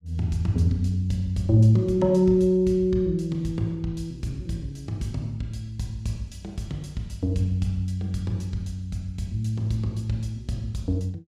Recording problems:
none

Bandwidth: 14.5 kHz